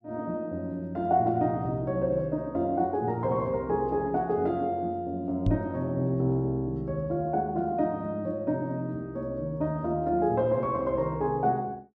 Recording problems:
microphone thump; at 5.5 s; peak +5 dB vs average level

